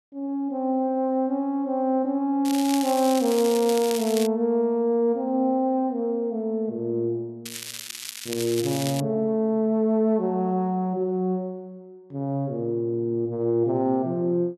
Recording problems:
crackle; from 2.5 to 4.5 s and from 7.5 to 9 s; loose cable, SNR 9 dB

